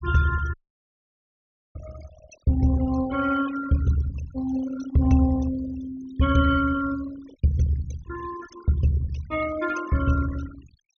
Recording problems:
treble missing; nothing above 6.7 kHz
denoising artefacts; signal-to-artefact ratio 16 dB
dropout; at 0.5 s for 1 s

